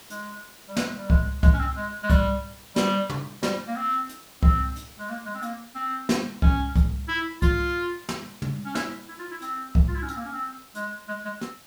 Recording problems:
hiss; slope -1 dB per octave, SNR 22 dB

